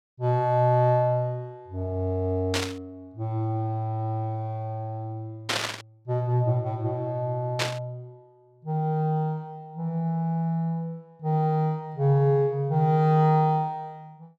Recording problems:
static burst; at 2.5 s, at 5.5 s and at 7.5 s; peak +4 dB vs average level

